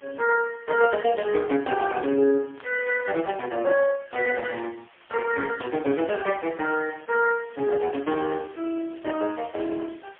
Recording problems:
phone line; 300 Hz to 3.3 kHz, AMR-NB, then MP3
hiss; SNR 28 dB
burst of static; at 2.5 s, at 4.5 s and at 8 s; peak -10 dB vs average level

